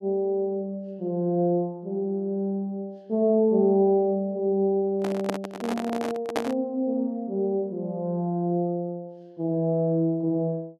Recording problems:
microphone handling noise; from 5 to 6.5 s; peak +3 dB vs average level

